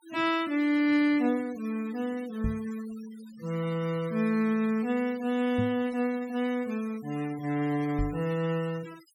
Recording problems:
noise reduction artefacts; signal-to-artefact ratio 20 dB
knock on the microphone; at 2.5 s, at 5.5 s and at 8 s; peak +1 dB vs average level

